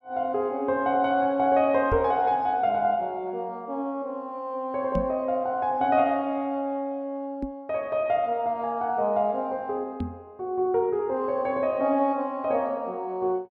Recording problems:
microphone bump; 4 times, first at 2 s; peak 0 dB vs average level

